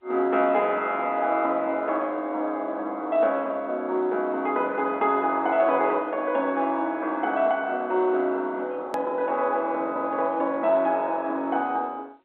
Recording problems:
phone line; 240 Hz to 3.8 kHz, G.711
edit click; at 9 s

